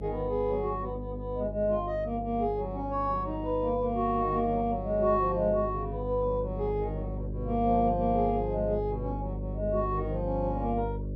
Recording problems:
hum; 50 Hz, harmonics up to 600 Hz, SNR 7 dB

